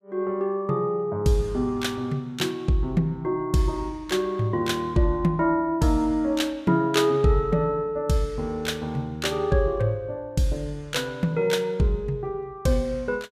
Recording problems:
none

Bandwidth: 15 kHz